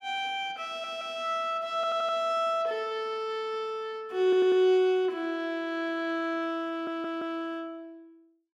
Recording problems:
audio stuttering; 4 times, first at 0.5 s

